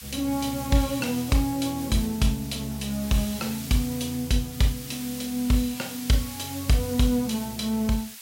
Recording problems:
hiss; slope +5 dB per octave, SNR 11 dB

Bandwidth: 16 kHz